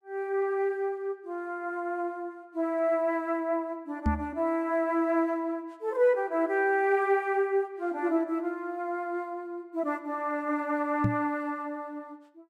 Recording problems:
microphone bump; at 4 s and at 11 s; peak +5 dB vs average level

